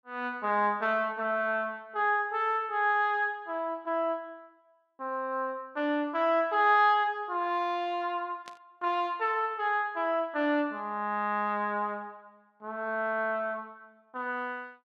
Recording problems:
static burst; at 8.5 s; peak -13 dB vs average level

